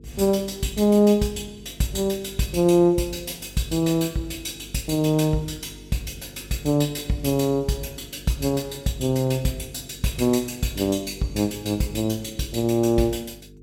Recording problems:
hum; 50 Hz, harmonics up to 450 Hz, SNR 22 dB

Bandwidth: 16 kHz